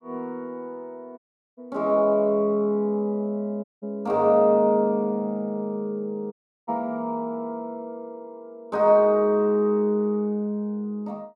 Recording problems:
dropout; at 1 s, at 3.5 s and at 6.5 s

